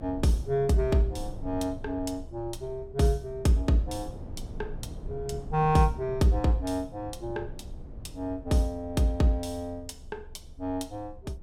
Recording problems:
rumble; below 120 Hz, strongest tone 22 Hz, SNR 15 dB

